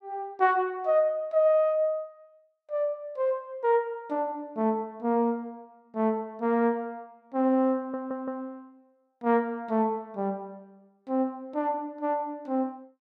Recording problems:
stutter; at 8 s

